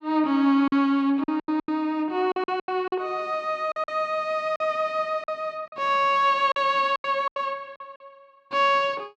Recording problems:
packet loss; 11% of the sound replaced, filled with silence

